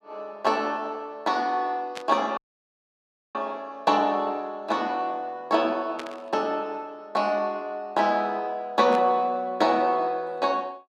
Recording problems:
burst of static; at 2 s, at 6 s and at 9 s; peak -6 dB vs average level
dropout; at 2.5 s for 1 s

